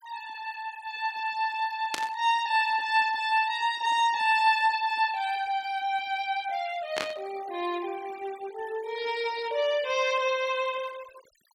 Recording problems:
noise reduction artefacts; signal-to-artefact ratio 19 dB
burst of static; at 2 s and at 7 s; peak +1 dB vs average level

